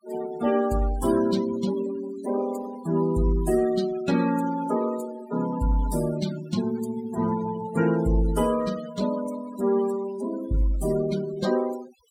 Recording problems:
denoising artefacts; signal-to-artefact ratio 13 dB

